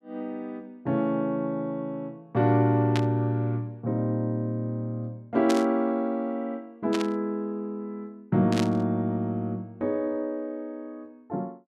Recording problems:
static burst; 4 times, first at 3 s; peak -1 dB vs average level

